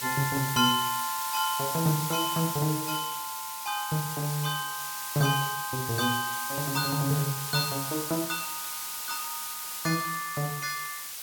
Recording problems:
background hiss; slope +3 dB per octave, SNR 4 dB

